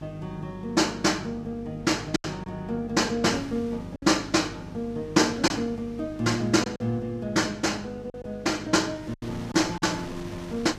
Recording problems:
lossy compression; Vorbis, log-spectral distance 2 dB, nothing above 13.5 kHz
hum; 50 Hz, harmonics up to 900 Hz, SNR 16 dB
wind on the microphone; below 2.1 kHz, SNR 22 dB
packet loss; 4% of the sound replaced, filled with silence

